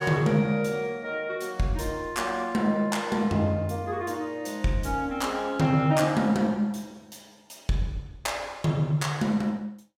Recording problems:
none

